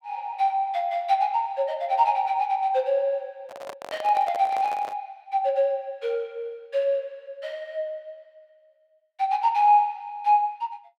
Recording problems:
microphone handling noise; from 3.5 to 5 s; peak -8 dB vs average level

